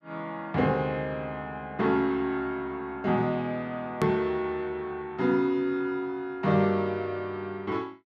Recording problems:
hard cut with a click; at 4 s

